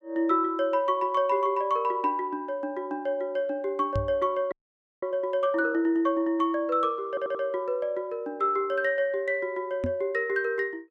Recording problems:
knock on the microphone; at 4 s and at 10 s; peak 0 dB vs average level
audio freezing; at 4.5 s for 0.5 s
stutter; at 7 s

